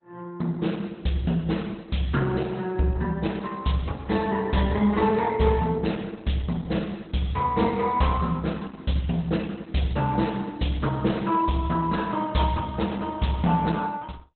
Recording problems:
codec artefacts; Opus, log-spectral distance 5 dB, nothing above 4 kHz

